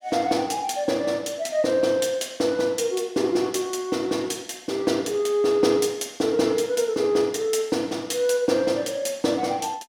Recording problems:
none

